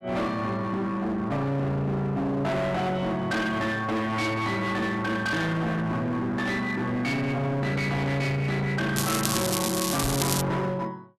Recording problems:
distorted audio; hard clipping, signal-to-distortion ratio 7 dB
crackle; from 9 to 10 s; loose cable, SNR 2 dB
microphone thump; at 10 s; peak +4 dB vs average level

